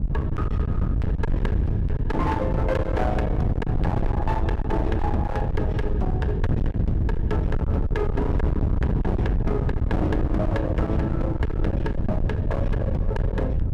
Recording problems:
distorted audio; hard clipping, signal-to-distortion ratio 8 dB
wind on the microphone; below 140 Hz, SNR -2 dB

